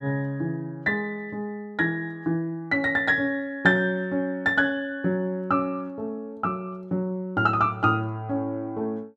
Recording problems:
none

